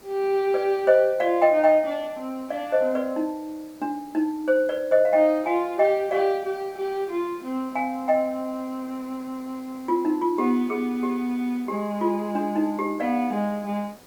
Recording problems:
background hiss; SNR 26 dB

